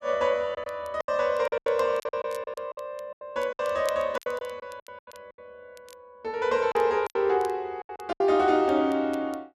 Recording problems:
crackle; vinyl, SNR 26 dB
packet loss; 14% of the sound replaced, filled with silence

